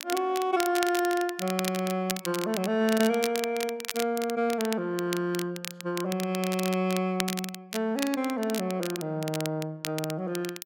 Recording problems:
crackle; vinyl, SNR 8 dB

